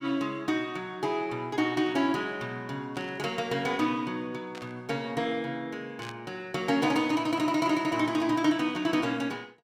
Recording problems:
static burst; at 3 s, at 4.5 s and at 6 s; peak -10 dB vs average level

